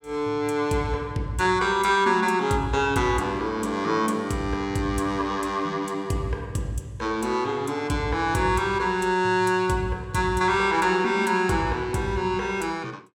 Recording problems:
none

